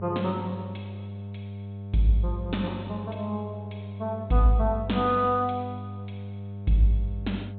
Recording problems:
treble cut off; nothing above 4 kHz
hum; 50 Hz, harmonics up to 700 Hz, SNR 10 dB

